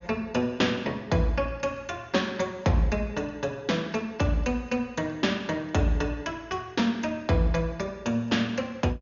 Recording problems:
low-pass filter; nothing above 6.9 kHz

